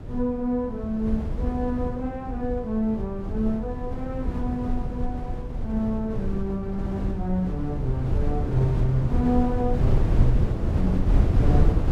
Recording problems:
wind noise; below 120 Hz, SNR 0 dB

